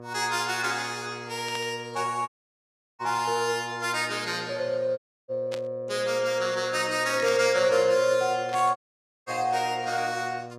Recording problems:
hum; 60 Hz, harmonics up to 1.3 kHz, SNR 16 dB
static burst; 4 times, first at 1.5 s; peak -7 dB vs average level
audio cutting out; at 2.5 s for 0.5 s, at 5 s and at 9 s for 0.5 s

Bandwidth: 15 kHz